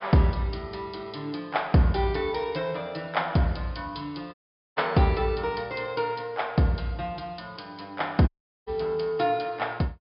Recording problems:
treble missing; nothing above 5.5 kHz
audio cutting out; at 4.5 s and at 8.5 s

